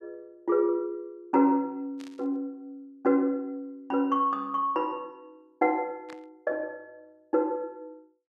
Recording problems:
static burst; at 2 s and at 6 s; peak -14 dB vs average level

